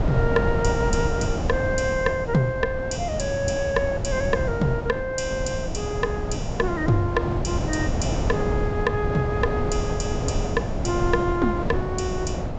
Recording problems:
low-pass filter; nothing above 8 kHz
wind on the microphone; below 370 Hz, SNR 2 dB

